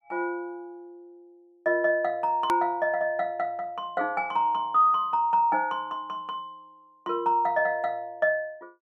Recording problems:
edit click; at 2.5 s

